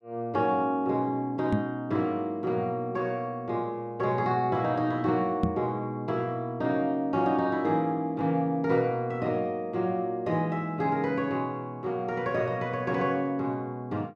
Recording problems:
microphone thump; at 1.5 s and at 5.5 s; peak +5 dB vs average level

